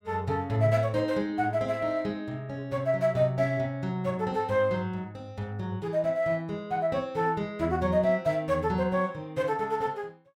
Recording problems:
none

